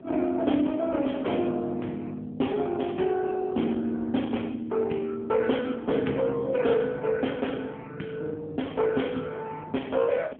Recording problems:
telephone audio; 170 Hz to 3.4 kHz, AMR-NB
wind on the microphone; below 410 Hz, SNR 22 dB

